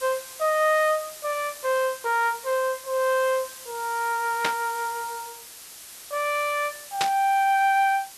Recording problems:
background hiss; slope +1 dB per octave, SNR 14 dB
static burst; at 4.5 s and at 7 s; peak +3 dB vs average level

